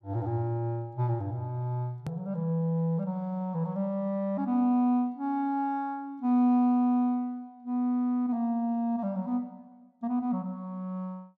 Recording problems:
hard cut with a click; at 2 s

